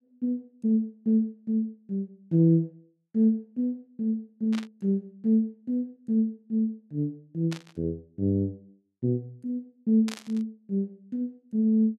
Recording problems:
static burst; at 4.5 s, at 7.5 s and at 10 s; peak -6 dB vs average level

